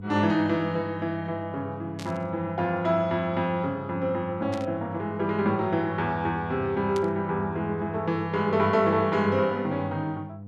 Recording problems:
electrical hum; 50 Hz, harmonics up to 700 Hz, SNR 13 dB
static burst; at 2 s, at 4.5 s and at 7 s; peak -8 dB vs average level

